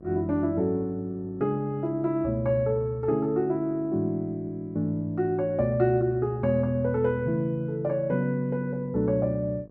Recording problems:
hum; 50 Hz, harmonics up to 1.1 kHz, SNR 25 dB

